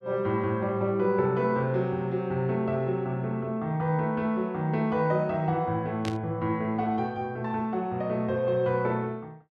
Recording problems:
burst of static; at 6 s; peak -6 dB vs average level

